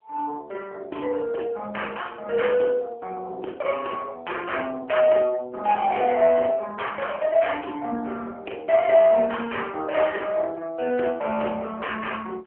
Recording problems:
phone line; 260 Hz to 3.2 kHz, AMR-NB

